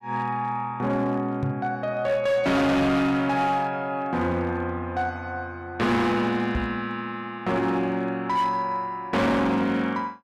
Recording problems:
distorted audio; hard clipping, signal-to-distortion ratio 8 dB
microphone thump; at 1.5 s and at 6.5 s; peak +1 dB vs average level

